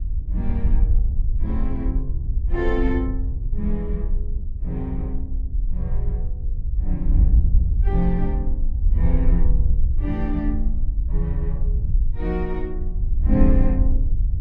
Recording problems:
wind on the microphone; below 60 Hz, SNR -5 dB

